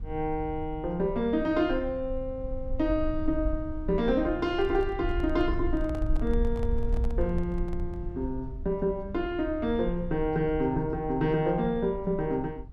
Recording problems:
rumble; below 62 Hz, SNR 8 dB
microphone handling noise; from 4.5 to 8 s; peak -12 dB vs average level

